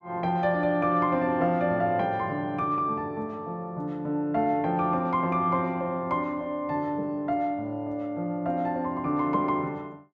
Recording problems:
none

